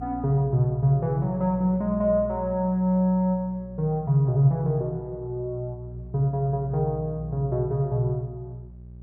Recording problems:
hum; 60 Hz, harmonics up to 420 Hz, SNR 16 dB

